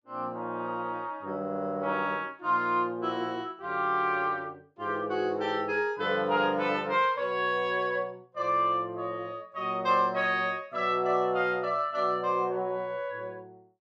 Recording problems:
none

